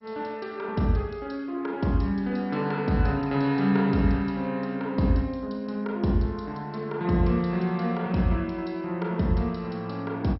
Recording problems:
codec artefacts; MP2, log-spectral distance 2 dB, nothing above 5.5 kHz

